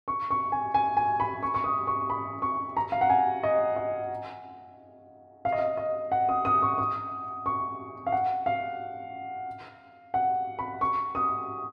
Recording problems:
none

